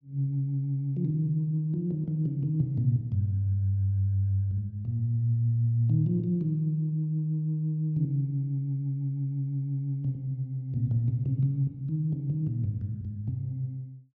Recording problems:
none

